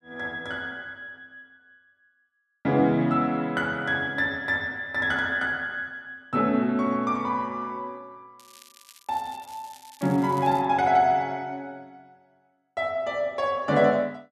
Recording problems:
crackle; from 8.5 to 11 s; loose cable, SNR 24 dB

